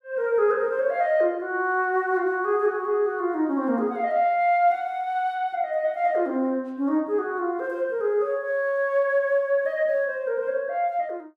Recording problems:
none

